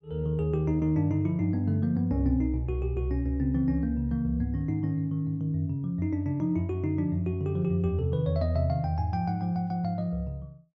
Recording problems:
none

